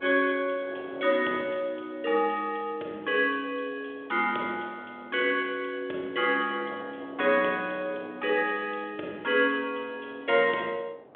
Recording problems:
phone line; 320 Hz to 3.8 kHz, G.726
wind on the microphone; below 740 Hz, SNR 21 dB

